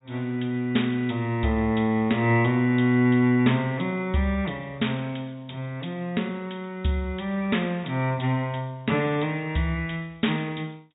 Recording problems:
treble missing; nothing above 4 kHz

